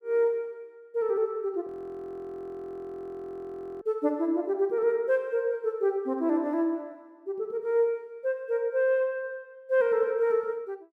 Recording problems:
audio freezing; at 1.5 s for 2 s

